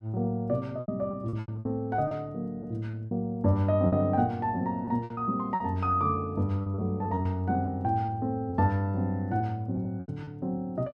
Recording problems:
lost packets; 10% of the sound replaced, filled with repeated pitch periods

